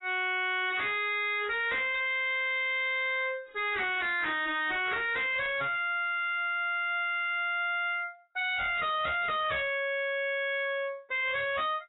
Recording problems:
lossy compression; AAC, log-spectral distance 6 dB, nothing above 3.2 kHz
distortion; hard clipping, signal-to-distortion ratio 5 dB

